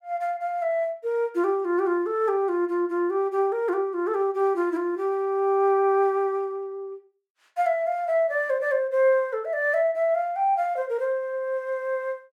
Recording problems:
none

